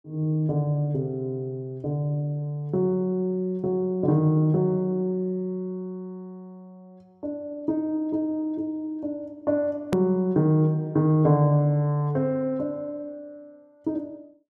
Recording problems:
click at an edit; at 10 s

